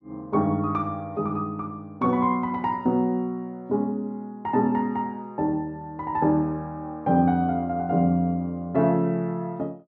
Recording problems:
none

